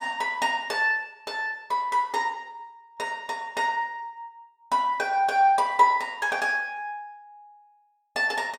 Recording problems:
none

